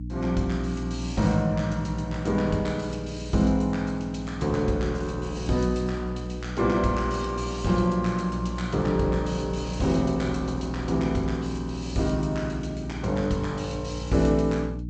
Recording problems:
lossy compression; G.722, log-spectral distance 4 dB, nothing above 7.8 kHz
electrical hum; 60 Hz, harmonics up to 300 Hz, SNR 8 dB

